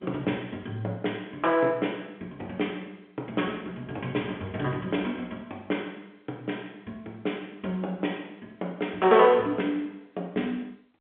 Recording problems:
telephone audio; 260 Hz to 4 kHz, G.711

